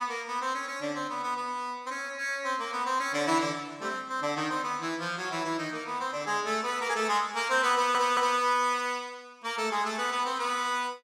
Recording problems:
stutter; at 7.5 s

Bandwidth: 16 kHz